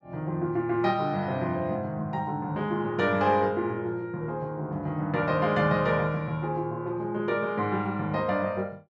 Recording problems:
none

